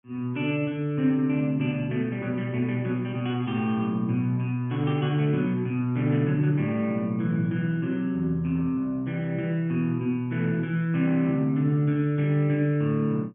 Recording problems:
treble cut off; nothing above 3.2 kHz

